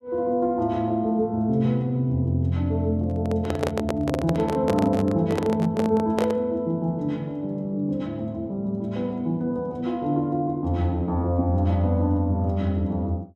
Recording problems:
handling noise; from 3 to 6.5 s; peak +2 dB vs average level

